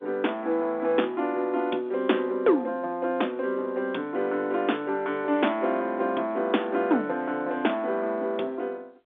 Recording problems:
phone line; 220 Hz to 3.6 kHz, G.711

